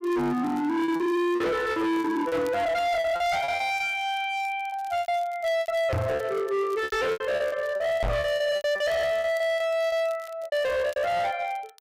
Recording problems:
distorted audio; hard clipping, signal-to-distortion ratio 7 dB
crackle; vinyl, SNR 27 dB
lost packets; 13% of the sound replaced, filled with repeated pitch periods
microphone thump; at 6 s and at 8 s; peak +2 dB vs average level

